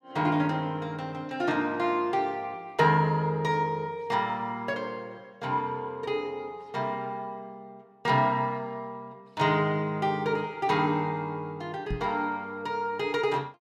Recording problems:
knock on the microphone; at 12 s; peak -1 dB vs average level

